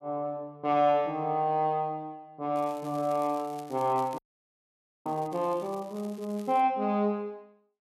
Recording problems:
crackle; from 2.5 to 5.5 s and from 5.5 to 6.5 s; loose cable, SNR 25 dB
audio freezing; at 4 s for 1 s

